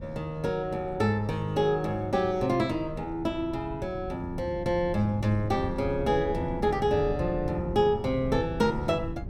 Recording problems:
wind noise; below 180 Hz, SNR 11 dB

